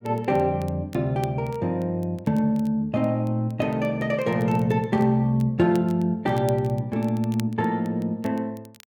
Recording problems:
crackle; vinyl, SNR 26 dB

